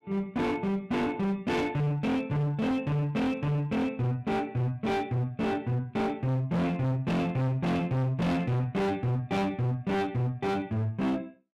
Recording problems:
distorted audio; hard clipping, uneven, signal-to-distortion ratio 6 dB

